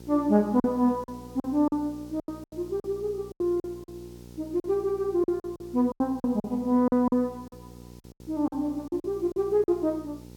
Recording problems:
hum; 60 Hz, harmonics up to 960 Hz, SNR 20 dB
hiss; slope +2 dB per octave, SNR 30 dB
lost packets; 13% of the sound replaced, filled with silence

